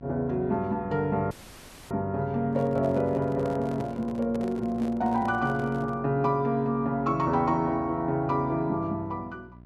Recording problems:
hum; 60 Hz, harmonics up to 720 Hz, SNR 20 dB
dropout; at 1.5 s for 0.5 s
handling noise; from 2.5 to 6 s; peak -7 dB vs average level

